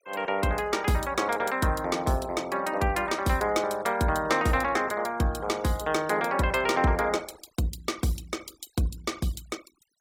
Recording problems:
noise reduction artefacts; signal-to-artefact ratio 22 dB

